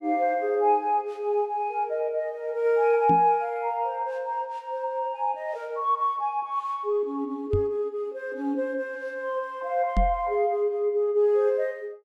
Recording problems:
knock on the microphone; at 3 s, at 7.5 s and at 10 s; peak +3 dB vs average level

